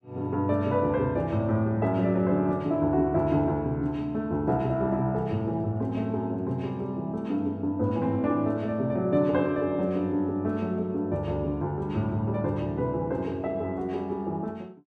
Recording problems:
none

